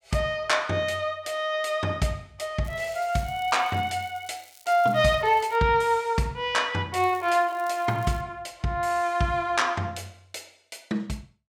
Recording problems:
crackle; from 2.5 to 5.5 s and from 7 to 8 s; loose cable, SNR 26 dB

